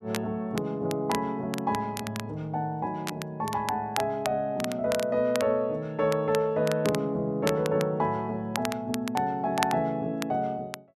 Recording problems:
crackle; vinyl, SNR 11 dB

